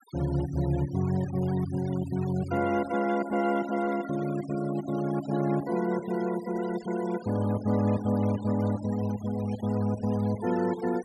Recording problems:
denoising artefacts; signal-to-artefact ratio 17 dB

